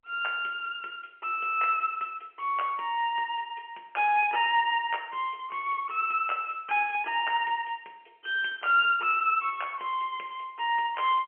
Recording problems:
telephone audio; 320 Hz to 3.2 kHz, G.711

